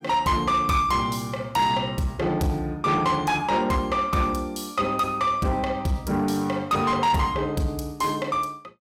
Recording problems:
distortion; soft clipping, signal-to-distortion ratio 11 dB

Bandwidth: 16.5 kHz